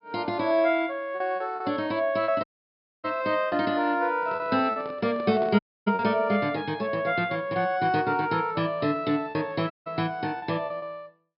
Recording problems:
treble missing; nothing above 5.5 kHz
lost packets; 5% of the sound replaced, filled with repeated pitch periods
dropout; at 2.5 s for 0.5 s, at 5.5 s and at 9.5 s
handling noise; from 4 to 6 s; peak -7 dB vs average level

